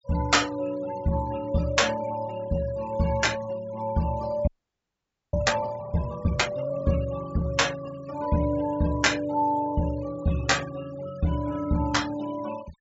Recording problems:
treble cut off; nothing above 8 kHz
denoising artefacts; signal-to-artefact ratio 18 dB
frozen audio; at 4.5 s for 1 s

